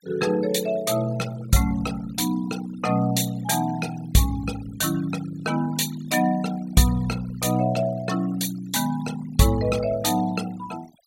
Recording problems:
denoising artefacts; signal-to-artefact ratio 18 dB

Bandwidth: 16 kHz